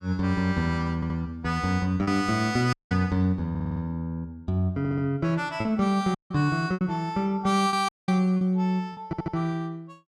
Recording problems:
packet loss; 4% of the sound replaced, filled with repeated pitch periods
stutter; 4 times, first at 1 s
audio cutting out; at 2.5 s, at 6 s and at 8 s

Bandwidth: 14 kHz